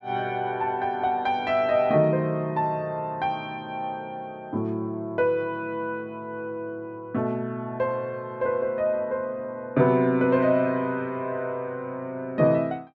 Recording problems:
none

